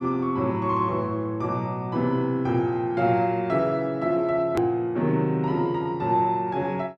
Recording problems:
click at an edit; at 4.5 s

